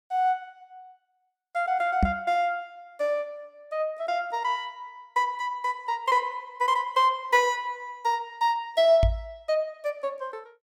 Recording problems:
knock on the microphone; at 2 s and at 9 s; peak +6 dB vs average level

